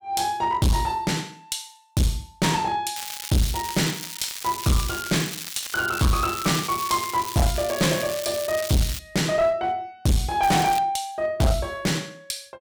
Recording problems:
distortion; hard clipping, uneven, signal-to-distortion ratio 5 dB
crackling; from 3 to 9 s and at 10 s; loose cable, SNR 8 dB

